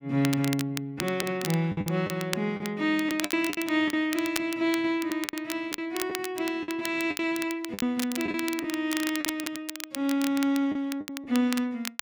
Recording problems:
crackling; vinyl, SNR 9 dB
packet loss; 9% of the sound replaced, filled with the last packet

